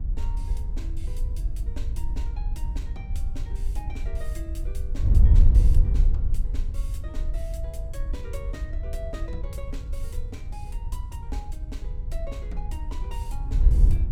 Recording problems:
wind on the microphone; below 64 Hz, SNR -15 dB

